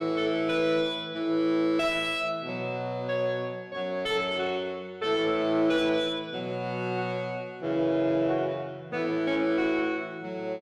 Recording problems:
distortion; soft clipping, signal-to-distortion ratio 10 dB

